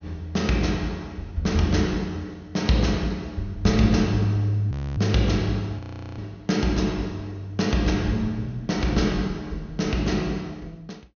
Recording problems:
treble missing; nothing above 6.6 kHz
audio freezing; at 4.5 s and at 6 s

